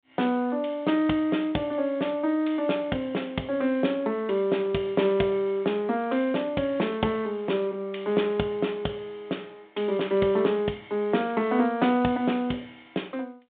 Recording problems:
telephone audio; 170 Hz to 3.7 kHz, G.726

